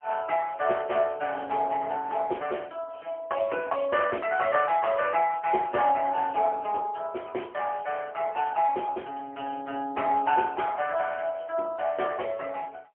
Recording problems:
phone line; 300 Hz to 3 kHz, AMR-NB, then MP3

